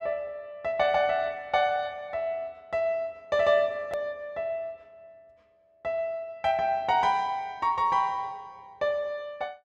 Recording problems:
click at an edit; at 4 s

